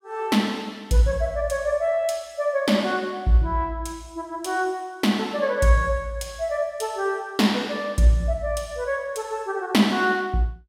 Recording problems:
none

